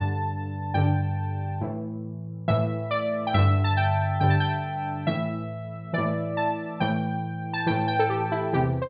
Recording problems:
treble missing; nothing above 4.6 kHz

